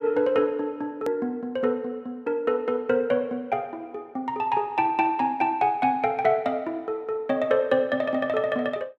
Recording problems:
click at an edit; at 1 s

